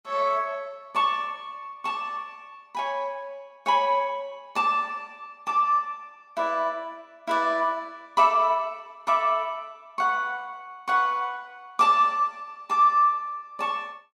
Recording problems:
none

